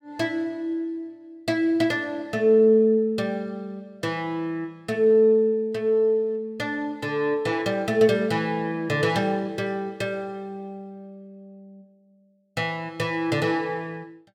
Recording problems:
none

